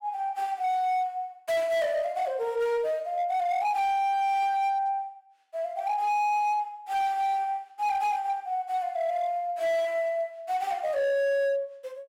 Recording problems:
distorted audio; hard clipping, signal-to-distortion ratio 12 dB

